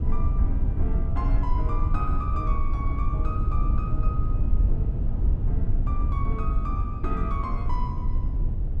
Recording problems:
rumble; below 76 Hz, SNR -9 dB

